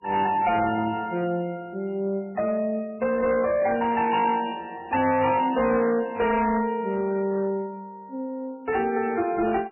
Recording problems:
lossy codec; MP3, log-spectral distance 3 dB, nothing above 2.5 kHz
distortion; hard clipping, signal-to-distortion ratio 11 dB

